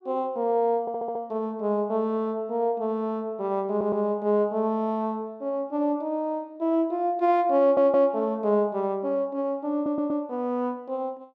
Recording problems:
audio stuttering; 4 times, first at 1 s

